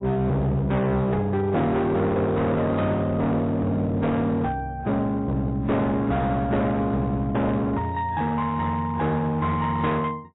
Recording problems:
lossy compression; AAC, log-spectral distance 2 dB, nothing above 3.8 kHz
distortion; hard clipping, uneven, signal-to-distortion ratio 7 dB

